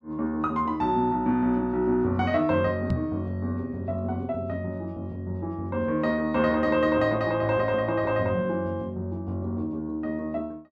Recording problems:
microphone thump; at 3 s; peak +3 dB vs average level

